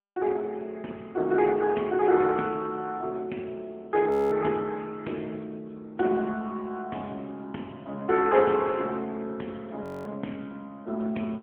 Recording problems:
telephone audio; 170 Hz to 3.1 kHz, AMR-NB
frozen audio; at 4 s and at 10 s

